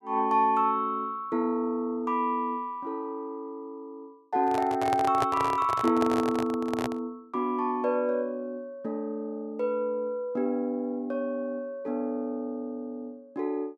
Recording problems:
microphone handling noise; from 4.5 to 7 s; peak +3 dB vs average level

